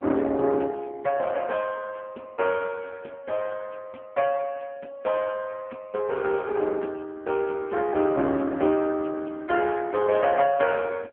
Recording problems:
telephone audio; 190 Hz to 3.3 kHz, AMR-NB

